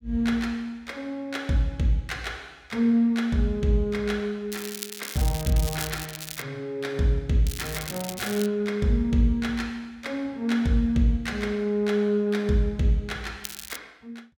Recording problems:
crackling; from 4.5 to 6.5 s, at 7.5 s and at 13 s; loose cable, SNR 10 dB

